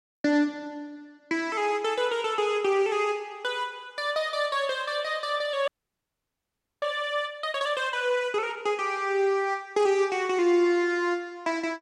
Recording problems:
audio freezing; at 5.5 s for 1 s

